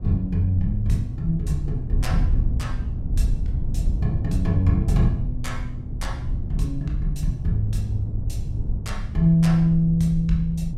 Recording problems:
low-frequency rumble; below 96 Hz, SNR 6 dB

